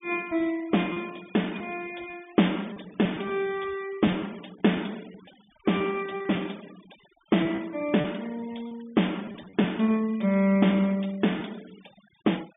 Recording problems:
treble cut off; nothing above 3.6 kHz
noise reduction artefacts; signal-to-artefact ratio 23 dB
packet loss; 5% of the sound replaced, filled with repeated pitch periods

